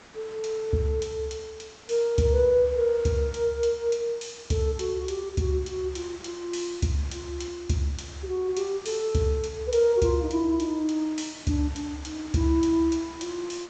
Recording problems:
treble missing; nothing above 8 kHz
hiss; slope -3 dB per octave, SNR 21 dB

